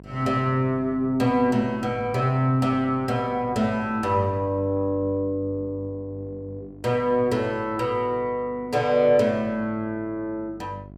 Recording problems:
hum; 50 Hz, harmonics up to 750 Hz, SNR 21 dB

